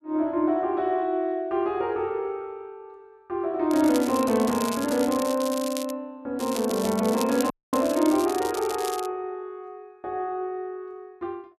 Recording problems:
crackling; from 3.5 to 6 s and from 6.5 to 9 s; loose cable, SNR 11 dB
audio cutting out; at 7.5 s

